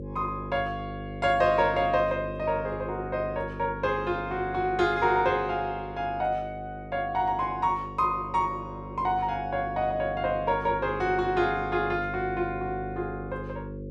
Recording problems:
hum; 50 Hz, harmonics up to 550 Hz, SNR 11 dB

